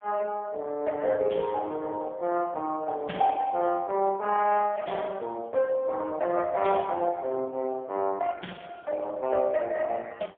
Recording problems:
phone line; 220 Hz to 2.5 kHz, AMR-NB, then MP3

